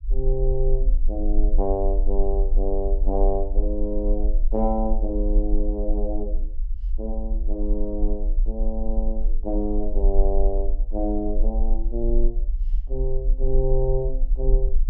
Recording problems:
low-frequency rumble; below 38 Hz, strongest tone 24 Hz, SNR -2 dB

